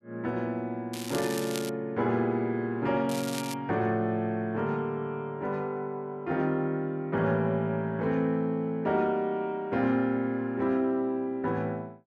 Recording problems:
crackling; at 1 s and at 3 s; loose cable, SNR 10 dB

